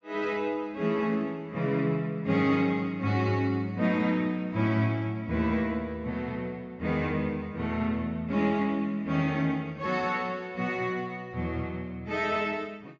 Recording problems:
treble missing; nothing above 8 kHz

